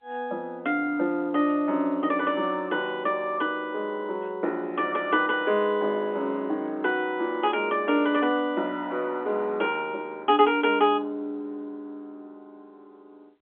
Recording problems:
phone line; 220 Hz to 3.4 kHz, G.711

